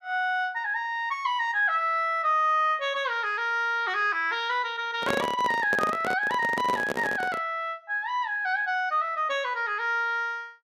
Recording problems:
handling noise; from 5 to 7.5 s; peak +1 dB vs average level

